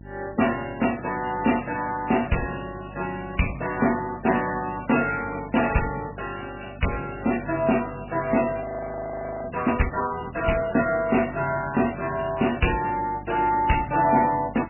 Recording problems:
lossy codec; MP3, log-spectral distance 10 dB, nothing above 2.8 kHz
hum; 50 Hz, harmonics up to 650 Hz, SNR 18 dB
audio freezing; at 8.5 s for 1 s

